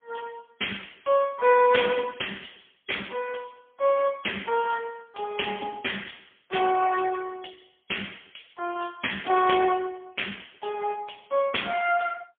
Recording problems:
phone line; 280 Hz to 3.3 kHz, AMR-NB, then MP3

